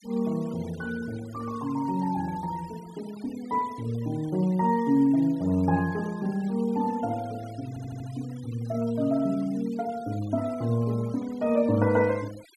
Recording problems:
noise reduction artefacts; signal-to-artefact ratio 22 dB
audio stuttering; at 7.5 s

